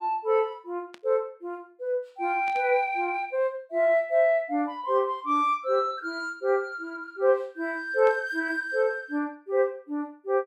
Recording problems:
static burst; at 1 s, at 2.5 s and at 8 s; peak -14 dB vs average level

